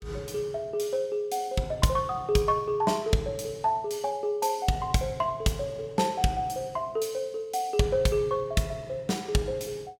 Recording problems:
none

